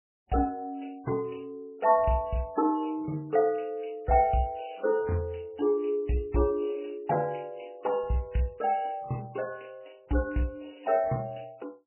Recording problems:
lossy codec; MP3, log-spectral distance 5 dB, nothing above 2.8 kHz

